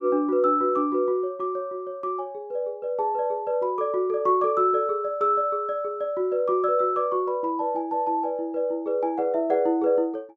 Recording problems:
none

